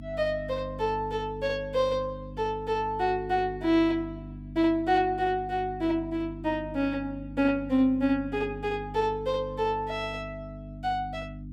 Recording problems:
mains hum; 50 Hz, harmonics up to 300 Hz, SNR 13 dB

